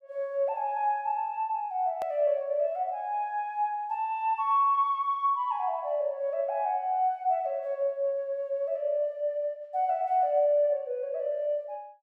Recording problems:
click at an edit; at 2 s

